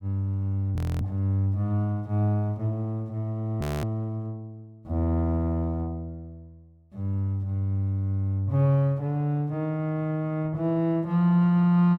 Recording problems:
audio freezing; at 1 s and at 3.5 s

